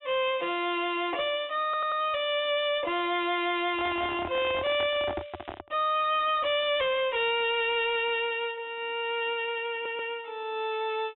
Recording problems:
low-pass filter; nothing above 3.7 kHz
distortion; hard clipping, uneven, signal-to-distortion ratio 10 dB
audio stuttering; at 1.5 s and at 9.5 s
handling noise; from 3.5 to 5.5 s; peak -3 dB vs average level
crackling; from 4 to 5.5 s; loose cable, SNR 27 dB

